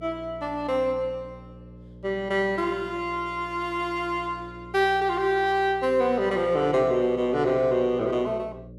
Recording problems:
hum; 60 Hz, harmonics up to 600 Hz, SNR 20 dB

